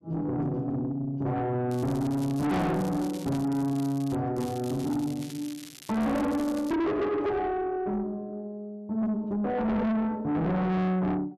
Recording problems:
distortion; soft clipping, signal-to-distortion ratio 6 dB
crackling; from 1.5 to 4 s and from 4.5 to 7 s; loose cable, SNR 17 dB

